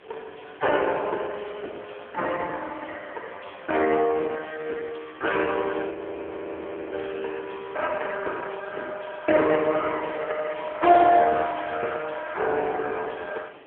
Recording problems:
phone line; 320 Hz to 3.4 kHz, AMR-NB
hiss; SNR 28 dB
wind noise; below 750 Hz, SNR 21 dB
frozen audio; at 6 s for 1 s

